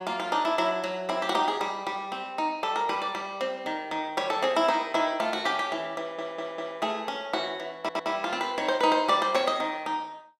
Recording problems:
audio stuttering; at 6 s and at 8 s

